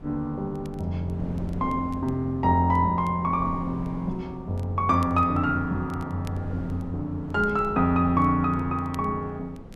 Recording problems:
wind on the microphone; below 300 Hz, SNR 15 dB
crackle; vinyl, SNR 30 dB

